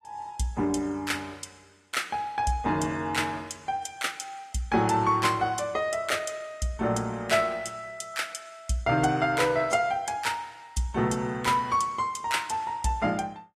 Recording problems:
codec artefacts; AAC, log-spectral distance 2 dB

